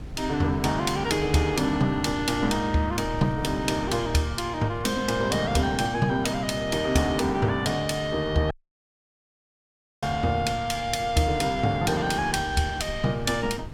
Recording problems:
wind noise; below 150 Hz, SNR 16 dB
dropout; at 8.5 s for 1.5 s

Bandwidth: 18 kHz